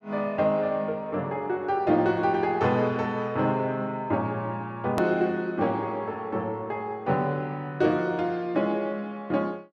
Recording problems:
edit click; at 5 s

